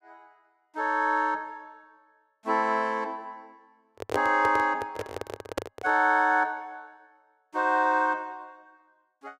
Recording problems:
microphone handling noise; from 4 to 6 s; peak +2 dB vs average level

